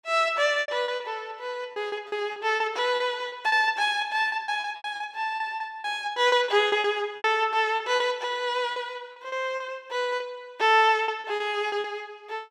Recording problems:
packet loss; 13% of the sound replaced, filled with repeated pitch periods

